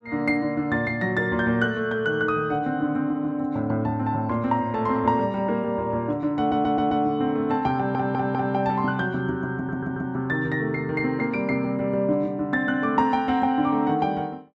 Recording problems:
stutter; at 6.5 s, at 8 s and at 9.5 s

